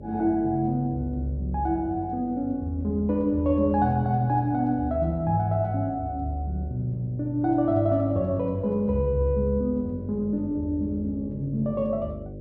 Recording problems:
hum; 50 Hz, harmonics up to 600 Hz, SNR 16 dB

